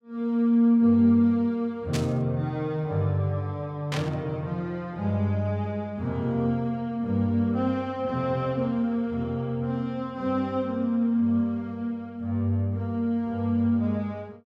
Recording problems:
burst of static; at 2 s and at 4 s; peak -3 dB vs average level

